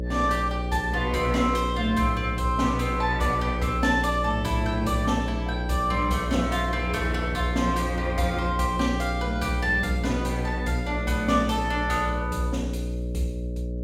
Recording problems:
hum; 60 Hz, harmonics up to 600 Hz, SNR 4 dB

